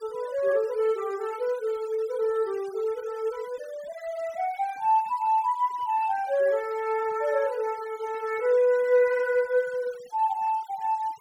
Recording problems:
denoising artefacts; signal-to-artefact ratio 23 dB

